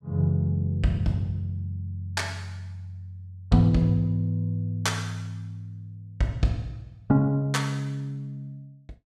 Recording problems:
none

